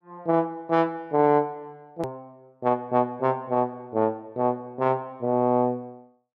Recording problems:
click at an edit; at 2 s

